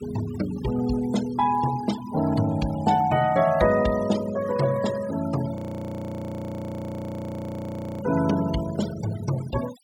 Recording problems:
noise reduction artefacts; signal-to-artefact ratio 14 dB
audio freezing; at 5.5 s for 2.5 s

